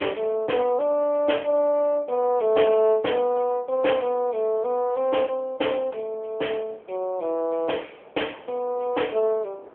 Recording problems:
telephone audio; 340 Hz to 3.3 kHz, AMR-NB
wind on the microphone; below 770 Hz, SNR 24 dB

